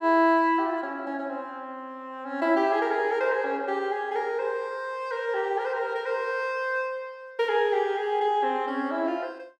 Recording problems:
none

